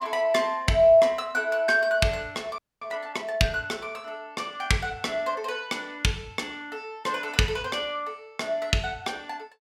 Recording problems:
audio freezing; at 2.5 s

